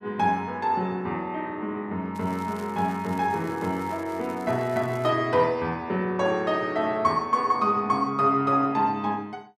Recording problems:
crackling; from 2 to 5 s; loose cable, SNR 25 dB

